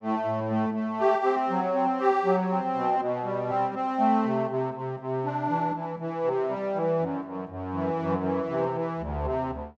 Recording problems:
none

